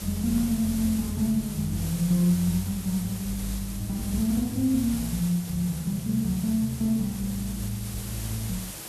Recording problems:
background hiss; slope -2 dB per octave, SNR 11 dB

